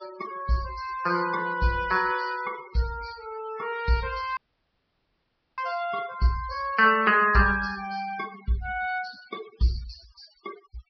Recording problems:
treble cut off; nothing above 5.5 kHz
denoising artefacts; signal-to-artefact ratio 17 dB
dropout; at 4.5 s for 1 s

